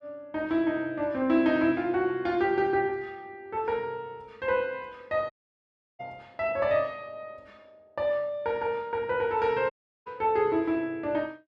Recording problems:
audio cutting out; at 5.5 s for 0.5 s and at 9.5 s

